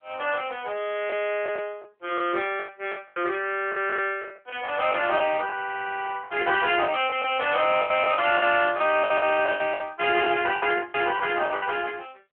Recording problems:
telephone audio; 280 Hz to 3.3 kHz, AMR-NB
lost packets; 12% of the sound replaced, filled with the last packet

